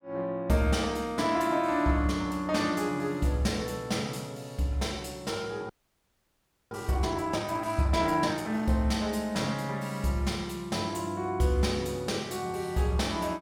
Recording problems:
audio freezing; at 5.5 s for 1 s

